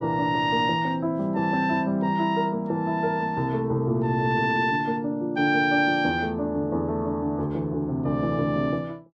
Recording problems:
none

